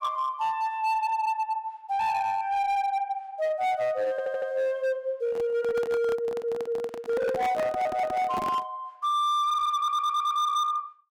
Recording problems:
distortion; hard clipping, signal-to-distortion ratio 11 dB
audio stuttering; 4 times, first at 4 s
microphone handling noise; from 5 to 8.5 s; peak -3 dB vs average level

